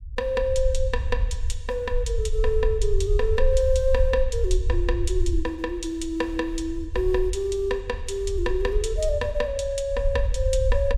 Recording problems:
rumble; below 62 Hz, SNR 3 dB

